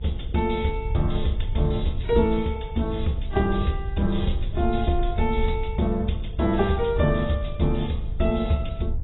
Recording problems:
lossy compression; AAC, log-spectral distance 3 dB, nothing above 3.9 kHz
hum; 50 Hz, harmonics up to 350 Hz, SNR 15 dB
wind on the microphone; below 66 Hz, SNR 7 dB

